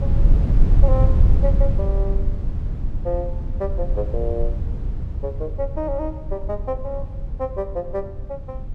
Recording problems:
low-frequency rumble; below 78 Hz, SNR -6 dB

